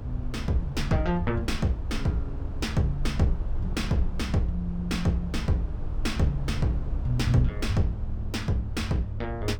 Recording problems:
electrical hum; 50 Hz, harmonics up to 350 Hz, SNR 25 dB
rumble; below 74 Hz, SNR 5 dB

